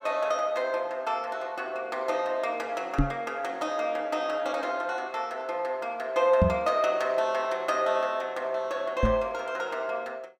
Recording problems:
microphone thump; at 3 s, at 6.5 s and at 9 s; peak +8 dB vs average level

